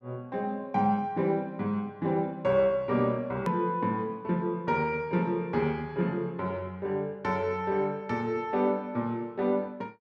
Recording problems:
click at an edit; at 3.5 s

